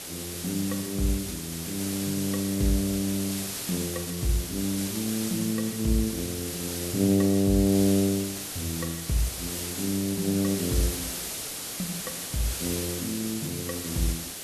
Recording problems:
background hiss; SNR 4 dB

